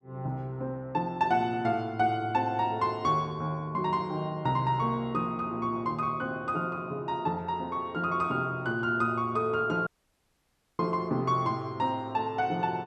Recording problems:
dropout; at 10 s for 1 s

